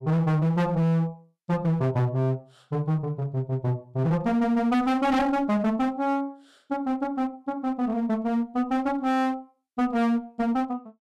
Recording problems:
distorted audio; hard clipping, uneven, signal-to-distortion ratio 5 dB

